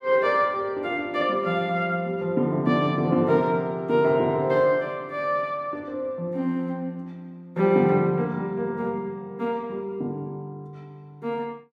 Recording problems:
none

